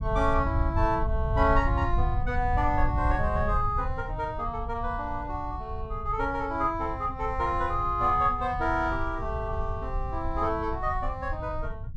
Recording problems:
low-frequency rumble; below 88 Hz, SNR 5 dB

